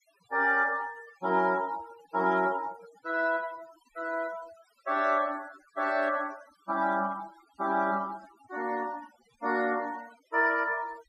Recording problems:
noise reduction artefacts; signal-to-artefact ratio 20 dB

